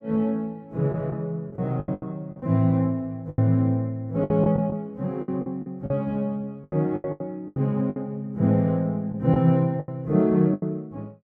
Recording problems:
lost packets; 11% of the sound replaced, filled with the last packet

